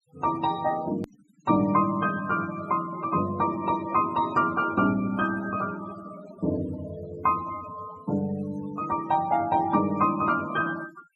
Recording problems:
denoising artefacts; signal-to-artefact ratio 17 dB
edit click; at 1 s

